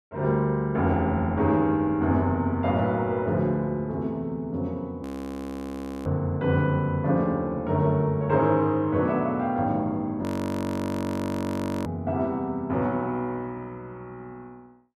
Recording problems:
frozen audio; at 5 s for 1 s and at 10 s for 1.5 s

